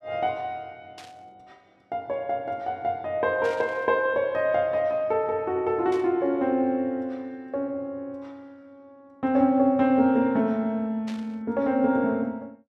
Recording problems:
burst of static; 4 times, first at 1 s; peak -13 dB vs average level

